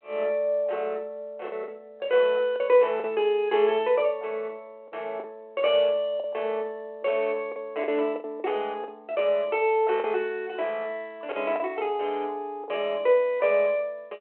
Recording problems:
phone line; 340 Hz to 3.1 kHz, G.726
lost packets; 5% of the sound replaced, filled with the last packet

